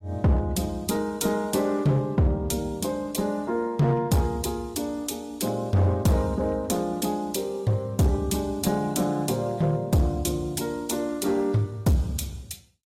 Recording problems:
lossy codec; AAC, log-spectral distance 3 dB
distorted audio; hard clipping, uneven, signal-to-distortion ratio 11 dB

